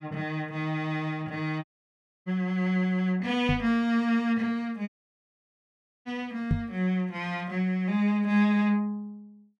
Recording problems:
dropout; at 1.5 s for 0.5 s and at 5 s for 1 s
microphone thump; at 3.5 s and at 6.5 s; peak +6 dB vs average level

